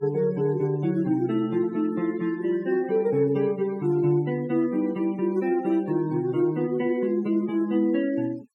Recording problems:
denoising artefacts; signal-to-artefact ratio 21 dB

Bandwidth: 16 kHz